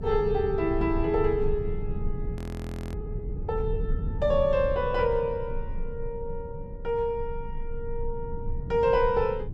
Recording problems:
low-frequency rumble; below 98 Hz, strongest tone 22 Hz, SNR 7 dB
audio freezing; at 2.5 s for 0.5 s

